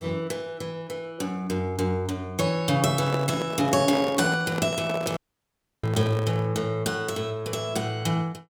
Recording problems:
microphone handling noise; from 3 to 6.5 s; peak 0 dB vs average level
audio cutting out; at 5 s for 0.5 s

